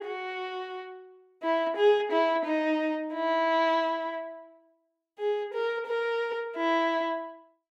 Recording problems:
none

